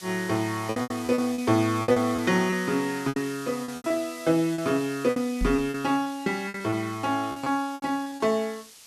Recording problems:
hiss; slope +2 dB per octave, SNR 17 dB
packet loss; 13% of the sound replaced, filled with repeated pitch periods
knock on the microphone; at 5.5 s; peak 0 dB vs average level

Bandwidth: 12.5 kHz